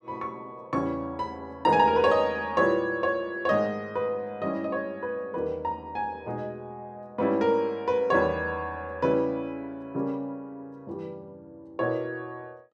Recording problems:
none

